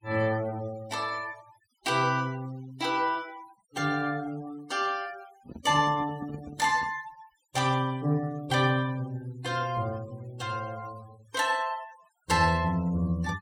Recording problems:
noise reduction artefacts; signal-to-artefact ratio 20 dB
handling noise; from 5.5 to 7 s; peak -9 dB vs average level

